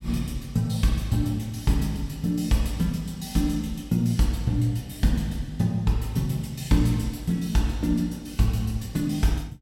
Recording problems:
none

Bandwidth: 16.5 kHz